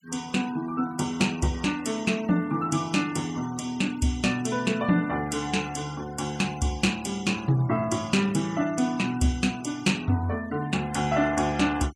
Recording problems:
noise reduction artefacts; signal-to-artefact ratio 19 dB

